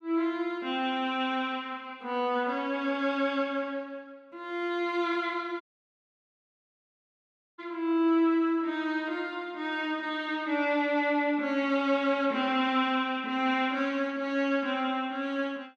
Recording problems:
dropout; at 5.5 s for 2 s

